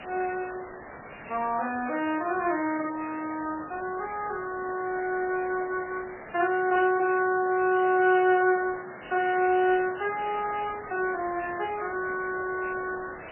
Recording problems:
lossy codec; MP3, log-spectral distance 20 dB, nothing above 2.6 kHz
background hiss; SNR 15 dB

